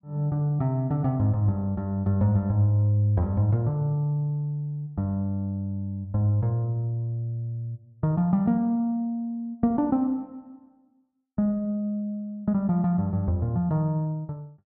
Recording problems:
none

